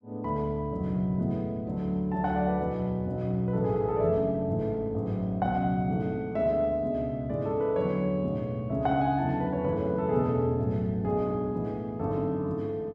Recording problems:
none

